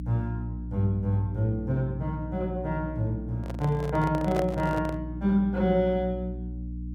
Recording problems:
hum; 60 Hz, harmonics up to 300 Hz, SNR 8 dB
handling noise; from 3.5 to 5 s; peak 0 dB vs average level

